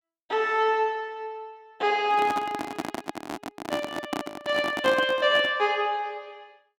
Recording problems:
handling noise; from 2 to 5.5 s; peak 0 dB vs average level

